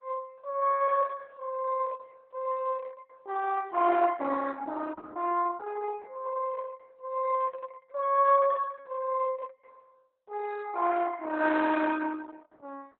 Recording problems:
lossy compression; Opus, log-spectral distance 3 dB, nothing above 3.8 kHz

